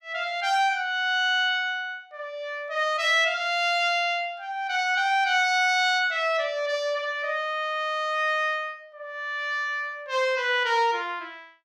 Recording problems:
none

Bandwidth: 15 kHz